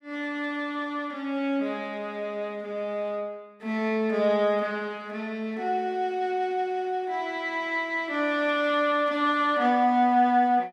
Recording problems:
none

